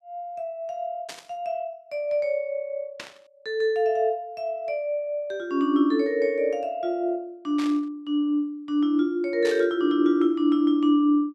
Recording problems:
burst of static; 4 times, first at 1 s; peak -7 dB vs average level

